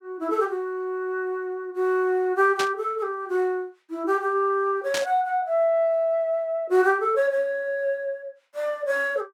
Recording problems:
burst of static; at 2.5 s and at 5 s; peak 0 dB vs average level

